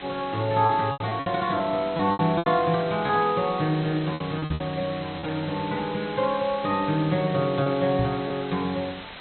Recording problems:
low-pass filter; nothing above 4.1 kHz
hiss; SNR 13 dB
packet loss; 8% of the sound replaced, filled with repeated pitch periods
microphone bump; at 4.5 s and at 8 s; peak +2 dB vs average level

